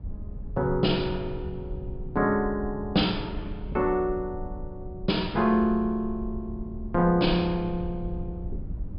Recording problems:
low-pass filter; nothing above 5.5 kHz
rumble; below 92 Hz, SNR 12 dB

